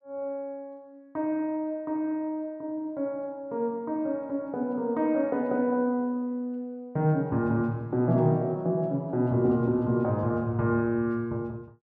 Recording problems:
none

